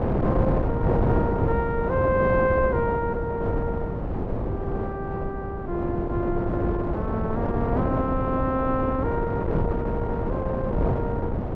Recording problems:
wind on the microphone; below 450 Hz, SNR -1 dB

